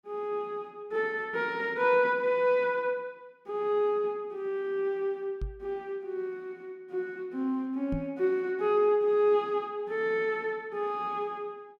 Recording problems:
microphone thump; at 5.5 s and at 8 s; peak -1 dB vs average level

